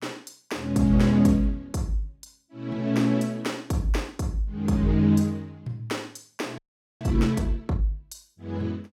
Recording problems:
frozen audio; at 6.5 s

